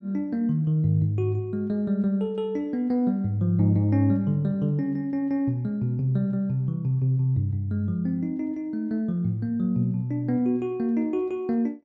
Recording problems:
none

